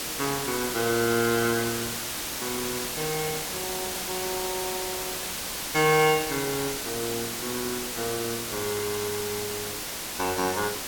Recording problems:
background hiss; slope -1 dB per octave, SNR 2 dB

